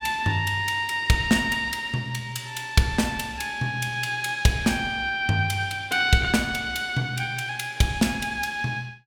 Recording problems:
none

